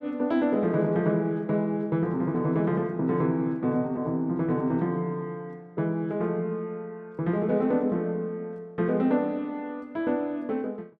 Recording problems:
none

